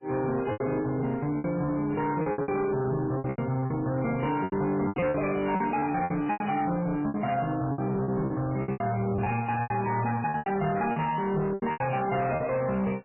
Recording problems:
codec artefacts; MP3, log-spectral distance 3 dB, nothing above 2.5 kHz
distortion; soft clipping, signal-to-distortion ratio 10 dB
packet loss; 14% of the sound replaced, filled with repeated pitch periods

